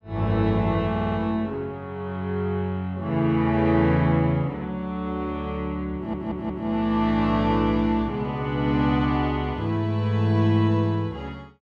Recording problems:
stutter; at 1 s and at 6 s

